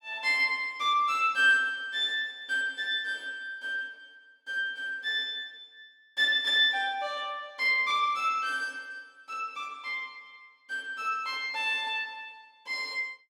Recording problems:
none

